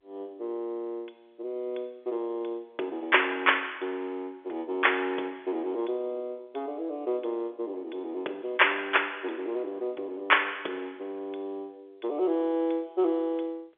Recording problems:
telephone audio; 300 Hz to 3.5 kHz, G.711

